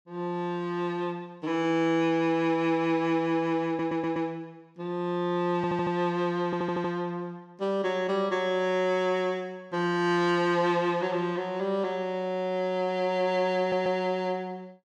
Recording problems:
audio stuttering; 4 times, first at 3.5 s

